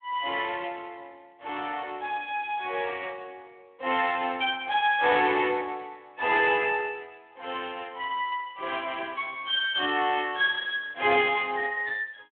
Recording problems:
telephone audio; 280 Hz to 3.5 kHz, Speex

